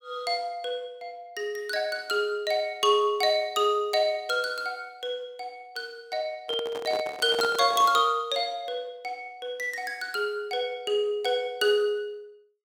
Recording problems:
handling noise; from 6.5 to 8 s; peak 0 dB vs average level

